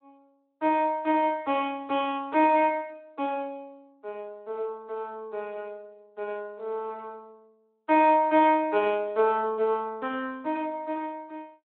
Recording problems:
telephone audio; 280 Hz to 3.7 kHz, Speex

